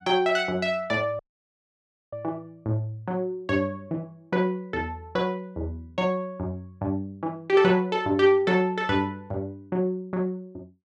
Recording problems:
dropout; at 1 s for 1 s

